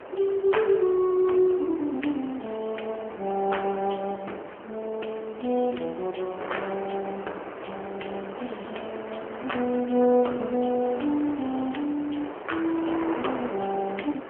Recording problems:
telephone audio; 280 Hz to 3.1 kHz, AMR-NB
wind noise; below 1.2 kHz, SNR 10 dB

